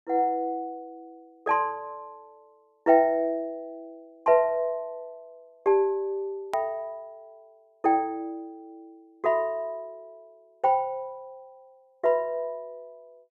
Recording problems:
hard cut with a click; at 6.5 s

